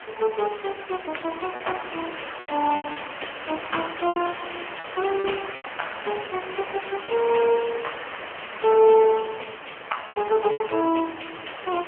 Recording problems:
phone line; 280 Hz to 3.2 kHz, AMR-NB
hiss; SNR 11 dB
packet loss; 6% of the sound replaced, filled with repeated pitch periods

